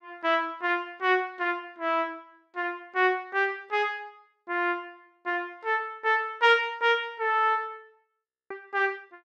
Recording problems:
audio freezing; at 8.5 s

